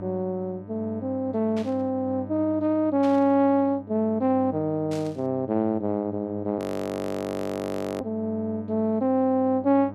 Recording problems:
mains hum; 50 Hz, harmonics up to 1.3 kHz, SNR 15 dB
burst of static; at 1.5 s, at 3 s and at 5 s; peak -12 dB vs average level
frozen audio; at 6.5 s for 1.5 s

